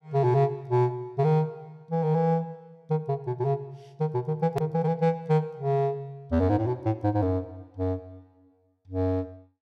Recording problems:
edit click; at 4.5 s

